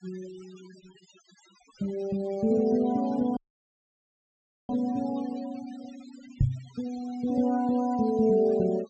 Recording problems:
treble missing; nothing above 8 kHz
denoising artefacts; signal-to-artefact ratio 21 dB
audio cutting out; at 3.5 s for 1.5 s
microphone thump; at 6.5 s; peak +6 dB vs average level

